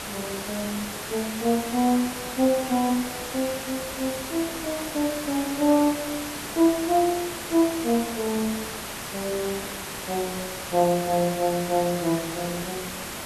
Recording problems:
background hiss; slope -3 dB per octave, SNR 7 dB

